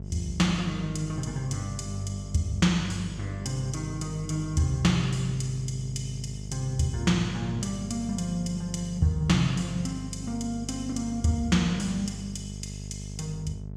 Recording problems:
electrical hum; 50 Hz, harmonics up to 650 Hz, SNR 10 dB

